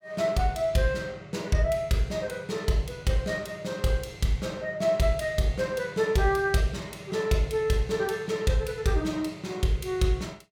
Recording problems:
none

